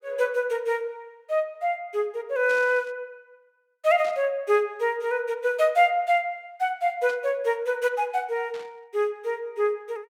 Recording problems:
static burst; 4 times, first at 2.5 s; peak -13 dB vs average level

